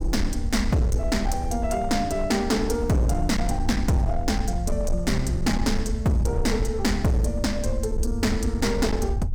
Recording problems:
distortion; hard clipping, signal-to-distortion ratio 10 dB
low-frequency rumble; below 72 Hz, SNR 5 dB

